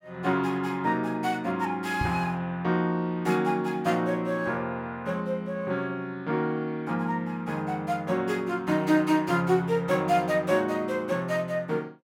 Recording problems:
microphone bump; at 2 s; peak 0 dB vs average level

